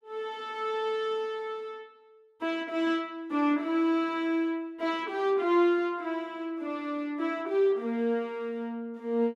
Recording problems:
none

